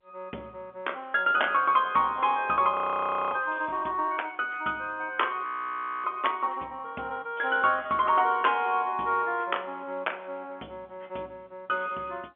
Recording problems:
telephone audio; 190 Hz to 3.4 kHz, G.711
frozen audio; at 2.5 s for 0.5 s and at 5.5 s for 0.5 s

